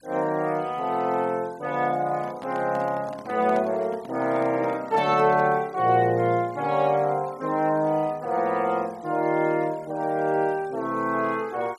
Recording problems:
noise reduction artefacts; signal-to-artefact ratio 26 dB
microphone handling noise; from 2 to 5.5 s; peak -8 dB vs average level

